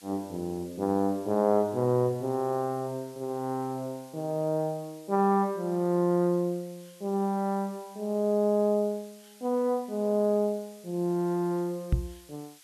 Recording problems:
background hiss; slope +5 dB per octave, SNR 25 dB
microphone thump; at 12 s; peak +7 dB vs average level

